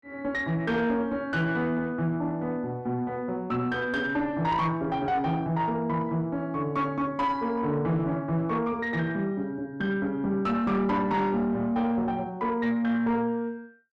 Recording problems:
distortion; soft clipping, signal-to-distortion ratio 11 dB

